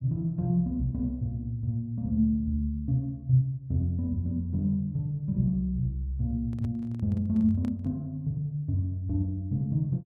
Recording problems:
handling noise; from 6.5 to 8 s; peak -9 dB vs average level

